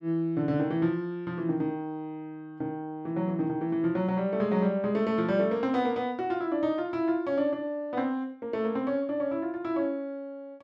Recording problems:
none

